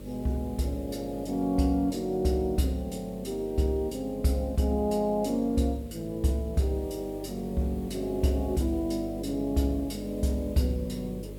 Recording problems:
mains hum; 50 Hz, harmonics up to 600 Hz, SNR 14 dB
background hiss; slope -2 dB per octave, SNR 26 dB

